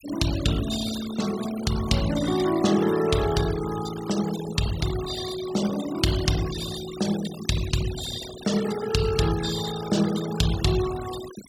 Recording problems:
noise reduction artefacts; signal-to-artefact ratio 12 dB

